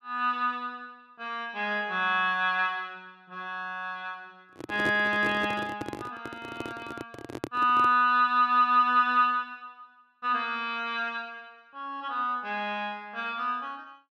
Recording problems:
microphone handling noise; from 4.5 to 8 s; peak -2 dB vs average level

